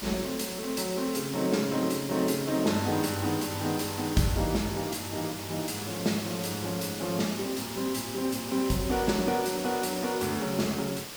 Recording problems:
hiss; slope -1 dB per octave, SNR 8 dB

